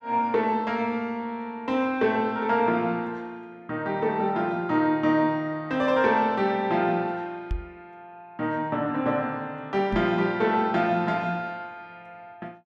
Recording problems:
knock on the microphone; at 7.5 s and at 10 s; peak -1 dB vs average level

